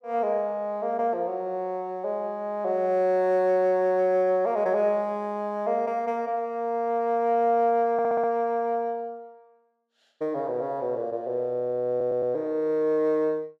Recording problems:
stutter; at 8 s and at 12 s

